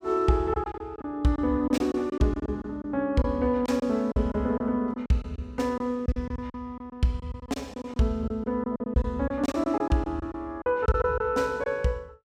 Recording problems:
lost packets; 12% of the sound replaced, filled with silence

